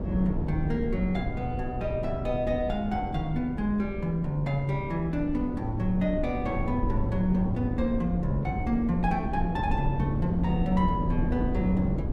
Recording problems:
wind on the microphone; below 230 Hz, SNR 4 dB

